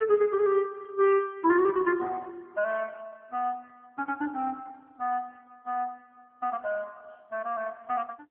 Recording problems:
telephone audio; 280 Hz to 3.1 kHz, AMR-NB

